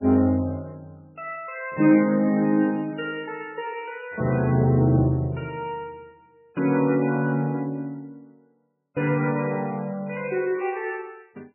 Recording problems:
codec artefacts; MP3, log-spectral distance 2 dB, nothing above 2.4 kHz

